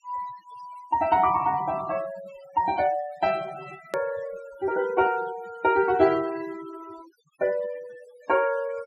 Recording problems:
denoising artefacts; signal-to-artefact ratio 19 dB
hard cut with a click; at 4 s

